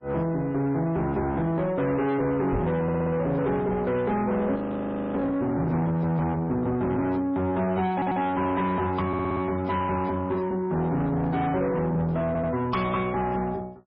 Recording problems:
lossy codec; MP3, log-spectral distance 2 dB, nothing above 5.5 kHz
distorted audio; soft clipping, signal-to-distortion ratio 10 dB
knock on the microphone; at 2.5 s; peak +1 dB vs average level
stutter; 4 times, first at 3 s
frozen audio; at 4.5 s for 0.5 s

